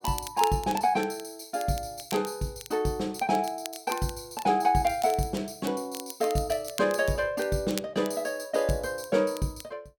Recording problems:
crackling; vinyl, SNR 15 dB

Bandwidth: 17.5 kHz